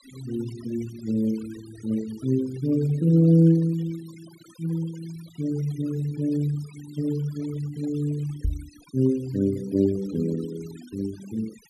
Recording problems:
denoising artefacts; signal-to-artefact ratio 22 dB
microphone thump; at 8.5 s; peak +2 dB vs average level

